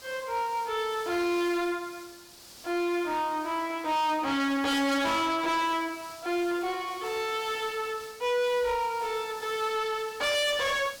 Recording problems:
distorted audio; soft clipping, signal-to-distortion ratio 7 dB
hiss; SNR 18 dB

